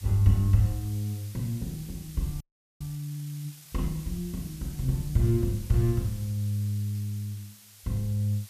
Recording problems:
background hiss; slope +2 dB per octave, SNR 18 dB
audio freezing; at 2.5 s

